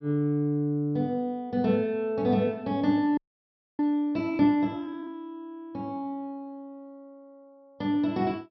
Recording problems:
treble missing; nothing above 5.8 kHz
audio freezing; at 3 s for 0.5 s

